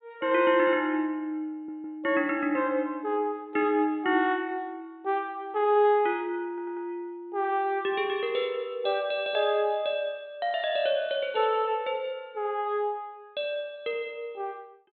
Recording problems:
treble missing; nothing above 4 kHz
audio stuttering; at 1.5 s and at 6.5 s

